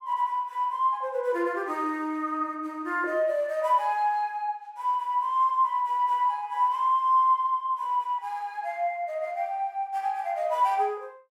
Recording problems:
none

